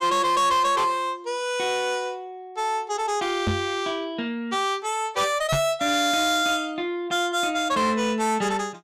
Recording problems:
distorted audio; soft clipping, signal-to-distortion ratio 10 dB
microphone thump; at 3.5 s and at 5.5 s; peak +2 dB vs average level

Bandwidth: 15.5 kHz